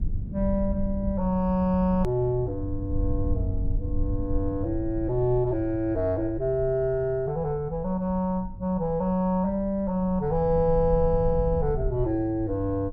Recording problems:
low-frequency rumble; below 78 Hz, SNR 8 dB
click at an edit; at 2 s

